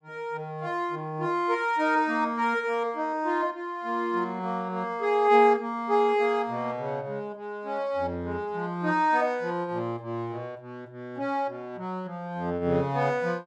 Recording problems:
none

